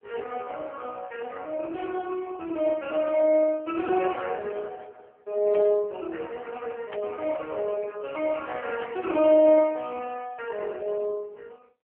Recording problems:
telephone audio; 260 Hz to 2.8 kHz, AMR-NB
static burst; at 5.5 s and at 7 s; peak -11 dB vs average level

